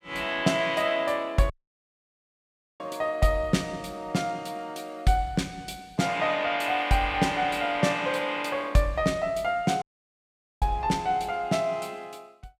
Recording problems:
dropout; at 1.5 s for 1.5 s and at 10 s for 1 s

